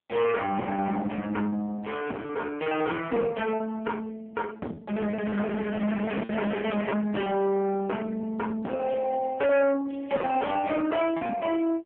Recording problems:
phone line; 170 Hz to 3.3 kHz, AMR-NB
distortion; soft clipping, signal-to-distortion ratio 8 dB
packet loss; 10% of the sound replaced, filled with repeated pitch periods

